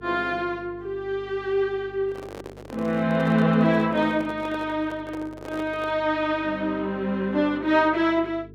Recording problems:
mains hum; 50 Hz, harmonics up to 450 Hz, SNR 21 dB
microphone handling noise; from 2 to 6 s; peak -10 dB vs average level

